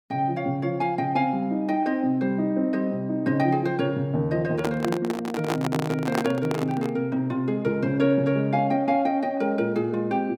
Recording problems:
microphone handling noise; from 4.5 to 7 s; peak +2 dB vs average level

